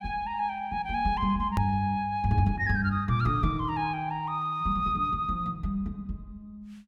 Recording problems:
edit click; at 1.5 s

